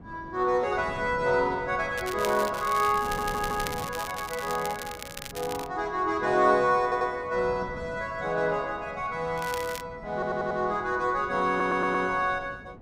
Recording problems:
wind on the microphone; below 340 Hz, SNR 18 dB
crackling; from 2 to 5.5 s and at 9.5 s; loose cable, SNR 12 dB
stutter; 4 times, first at 3 s

